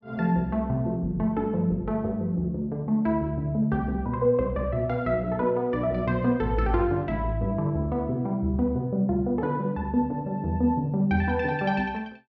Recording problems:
treble cut off; nothing above 7.6 kHz

